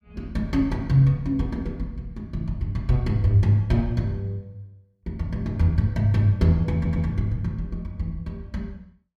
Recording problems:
audio stuttering; at 7 s

